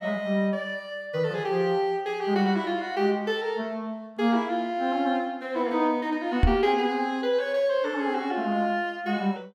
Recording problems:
knock on the microphone; at 6.5 s; peak +9 dB vs average level

